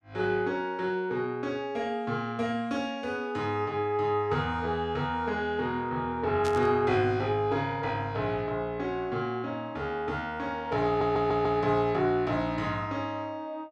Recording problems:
burst of static; at 6.5 s; peak -6 dB vs average level
audio stuttering; at 11 s

